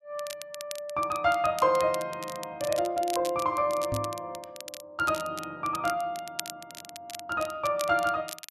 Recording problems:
crackle; vinyl, SNR 13 dB
microphone thump; at 4 s; peak -1 dB vs average level

